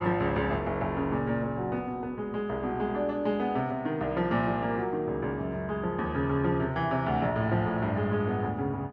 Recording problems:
none

